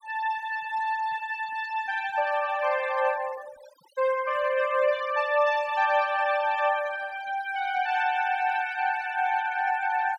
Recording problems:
denoising artefacts; signal-to-artefact ratio 18 dB

